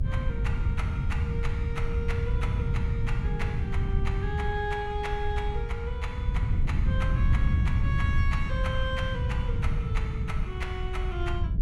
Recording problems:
rumble; below 70 Hz, SNR 2 dB
wind on the microphone; below 120 Hz, SNR -6 dB

